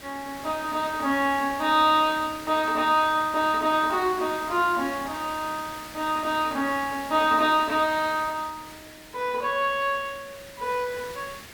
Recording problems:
hiss; SNR 16 dB

